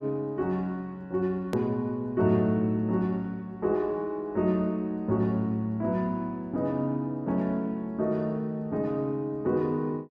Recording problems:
hard cut with a click; at 1.5 s

